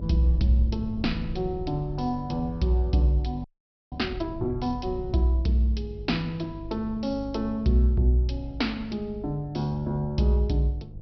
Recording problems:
treble cut off; nothing above 5.5 kHz
hum; 50 Hz, harmonics up to 500 Hz, SNR 16 dB
rumble; below 84 Hz, SNR 15 dB
frozen audio; at 3.5 s

